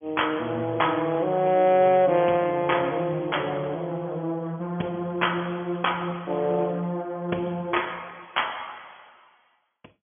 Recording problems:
phone line; 190 Hz to 3.4 kHz, Speex

